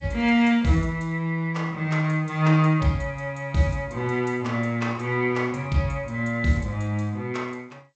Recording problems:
lossy codec; G.722, log-spectral distance 2 dB

